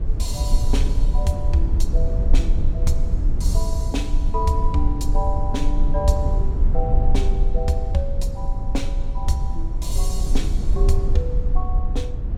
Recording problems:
rumble; below 56 Hz, SNR -5 dB

